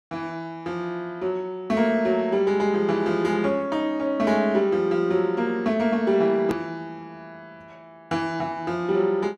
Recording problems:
click at an edit; at 6.5 s

